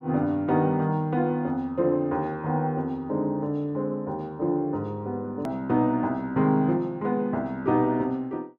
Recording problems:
click at an edit; at 5.5 s

